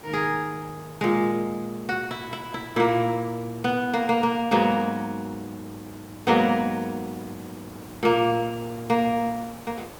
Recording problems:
hiss; slope -6 dB per octave, SNR 19 dB

